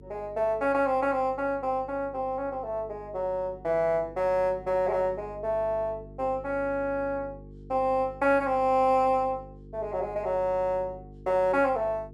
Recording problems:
electrical hum; 50 Hz, harmonics up to 450 Hz, SNR 20 dB

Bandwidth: 13.5 kHz